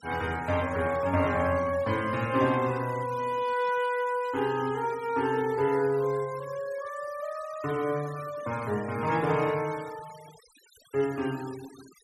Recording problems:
denoising artefacts; signal-to-artefact ratio 19 dB

